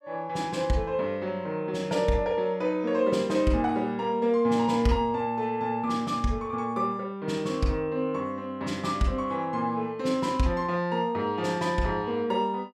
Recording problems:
none

